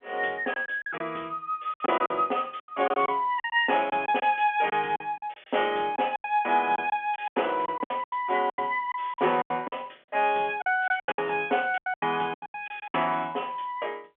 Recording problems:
phone line; 280 Hz to 3.4 kHz, G.711
lost packets; 14% of the sound replaced, filled with silence

